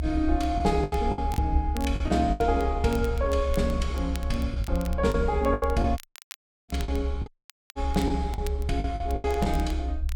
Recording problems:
low-frequency rumble; below 68 Hz, strongest tone 66 Hz, SNR 3 dB
crackling; vinyl, SNR 20 dB
packet loss; 12% of the sound replaced, filled with the last packet
audio cutting out; at 6 s for 0.5 s and at 7.5 s

